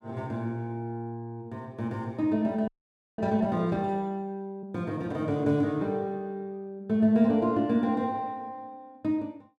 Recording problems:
audio freezing; at 2.5 s for 0.5 s

